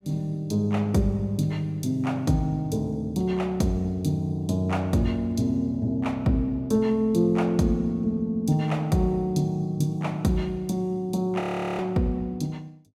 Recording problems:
audio freezing; at 11 s

